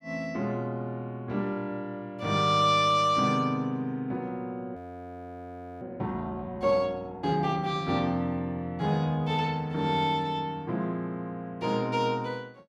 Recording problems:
frozen audio; at 5 s for 1 s

